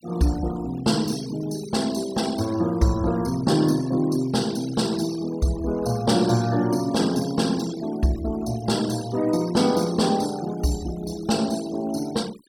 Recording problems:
denoising artefacts; signal-to-artefact ratio 17 dB

